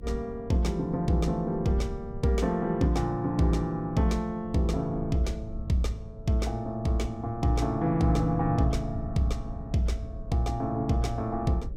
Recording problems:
hum; 60 Hz, harmonics up to 600 Hz, SNR 25 dB
rumble; below 100 Hz, SNR 14 dB

